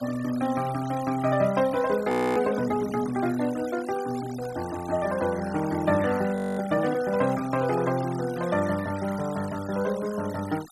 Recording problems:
denoising artefacts; signal-to-artefact ratio 17 dB
audio freezing; at 2 s and at 6.5 s

